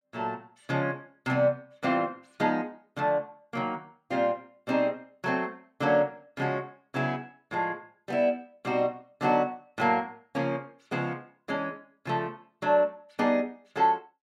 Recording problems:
none

